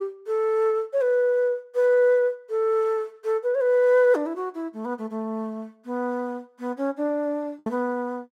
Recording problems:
packet loss; 0.8% of the sound replaced, filled with the last packet

